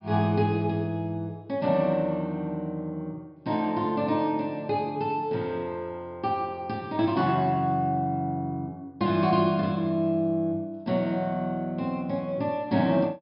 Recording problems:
low-pass filter; nothing above 5.5 kHz

